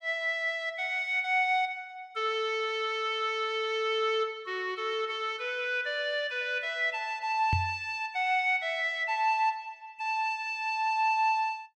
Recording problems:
microphone bump; at 7.5 s; peak +2 dB vs average level

